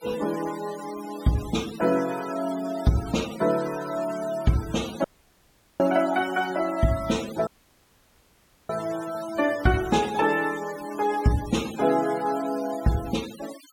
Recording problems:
denoising artefacts; signal-to-artefact ratio 16 dB
audio cutting out; at 5 s for 1 s and at 7.5 s for 1 s

